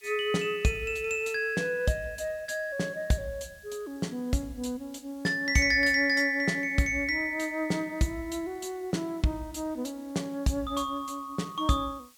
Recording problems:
hiss; slope +2 dB per octave, SNR 28 dB

